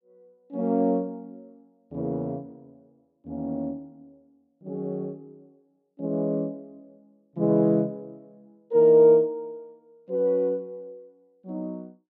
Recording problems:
none

